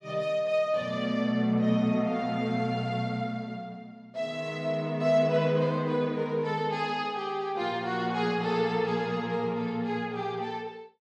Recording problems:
none

